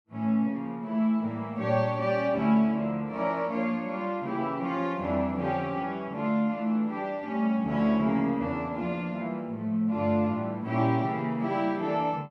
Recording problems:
none

